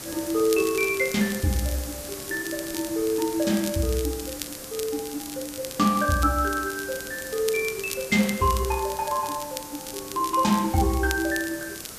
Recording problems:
hiss; SNR 11 dB
crackling; vinyl, SNR 13 dB

